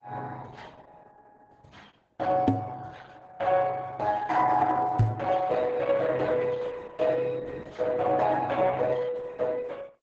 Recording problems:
lossy codec; Opus, then Opus, log-spectral distance 4 dB, nothing above 7.3 kHz
microphone bump; at 2.5 s and at 5 s; peak +8 dB vs average level

